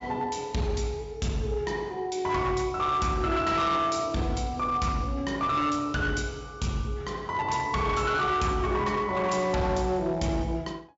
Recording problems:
treble cut off; nothing above 8 kHz
distortion; hard clipping, signal-to-distortion ratio 12 dB

